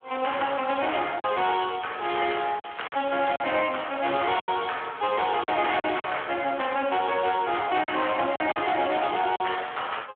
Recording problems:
telephone audio; 150 Hz to 3.3 kHz, Speex
distortion; hard clipping, uneven, signal-to-distortion ratio 10 dB
lost packets; 5% of the sound replaced, filled with silence
crackle; from 1.5 to 4.5 s; loose cable, SNR 21 dB

